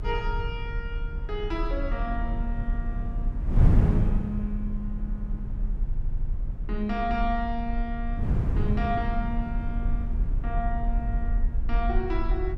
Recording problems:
rumble; below 42 Hz, strongest tone 30 Hz, SNR 0 dB
wind on the microphone; below 150 Hz, SNR -1 dB
audio stuttering; at 6 s

